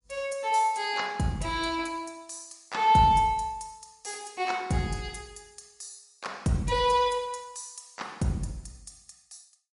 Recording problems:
lossy codec; MP3, log-spectral distance 4 dB, nothing above 10.7 kHz

